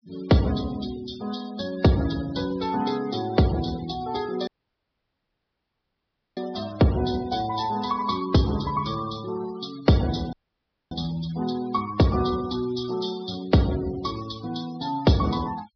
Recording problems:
low-pass filter; nothing above 5.5 kHz
noise reduction artefacts; signal-to-artefact ratio 17 dB
audio cutting out; at 4.5 s for 2 s and at 10 s for 0.5 s

